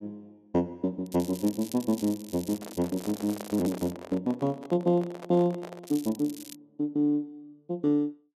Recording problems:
crackle; from 1 to 4 s and at 6 s; loose cable, SNR 16 dB
handling noise; from 2.5 to 6 s; peak -7 dB vs average level

